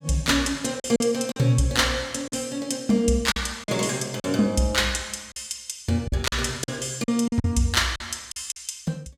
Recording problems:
packet loss; 8% of the sound replaced, filled with silence

